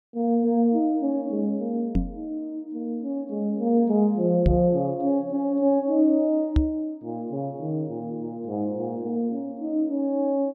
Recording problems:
knock on the microphone; at 2 s, at 4.5 s and at 6.5 s; peak +6 dB vs average level

